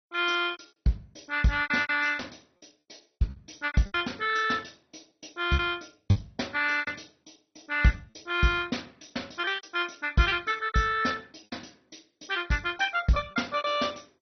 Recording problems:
codec artefacts; MP2, log-spectral distance 8 dB, nothing above 6 kHz
packet loss; 11% of the sound replaced, filled with repeated pitch periods

